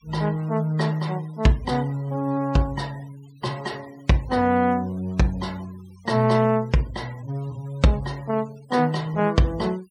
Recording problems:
denoising artefacts; signal-to-artefact ratio 25 dB

